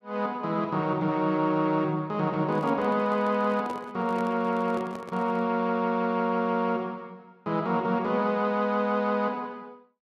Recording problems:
microphone handling noise; from 2.5 to 5.5 s; peak -8 dB vs average level

